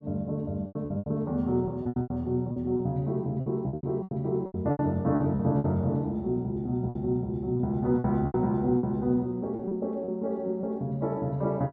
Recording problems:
packet loss; 12% of the sound replaced, filled with repeated pitch periods

